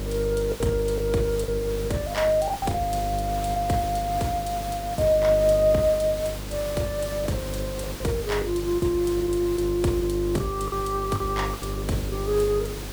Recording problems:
hum; 50 Hz, harmonics up to 600 Hz, SNR 8 dB
background hiss; slope -3 dB per octave, SNR 12 dB
lost packets; 6% of the sound replaced, filled with the last packet

